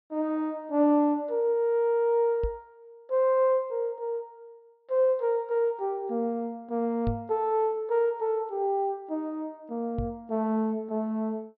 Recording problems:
treble cut off; nothing above 5.5 kHz
microphone thump; at 2.5 s, at 7 s and at 10 s; peak 0 dB vs average level

